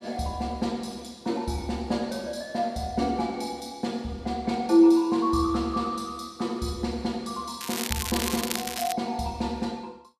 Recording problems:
crackle; from 7.5 to 9 s; loose cable, SNR 4 dB

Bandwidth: 14.5 kHz